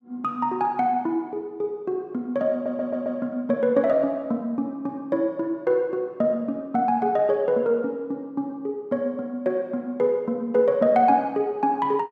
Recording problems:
audio stuttering; at 2.5 s

